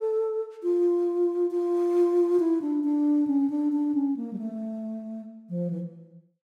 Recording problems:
none

